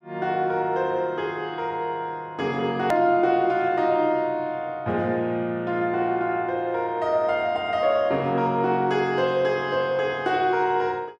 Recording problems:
hard cut with a click; at 3 s

